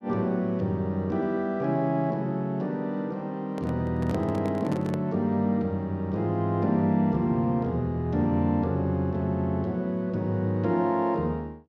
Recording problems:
handling noise; from 3.5 to 5 s; peak -6 dB vs average level

